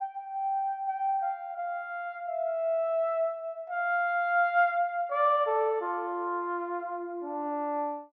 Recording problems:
none

